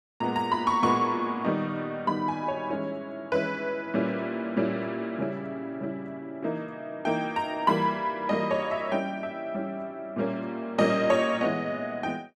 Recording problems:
none

